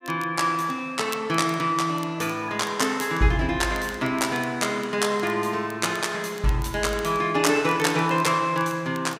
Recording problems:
crackle; vinyl, SNR 22 dB

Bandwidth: 15.5 kHz